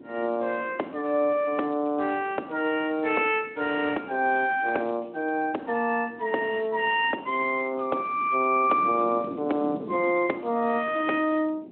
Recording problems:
phone line; 260 Hz to 3.1 kHz, Speex
wind on the microphone; below 400 Hz, SNR 17 dB

